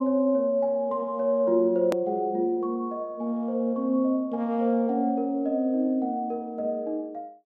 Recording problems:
edit click; at 2 s

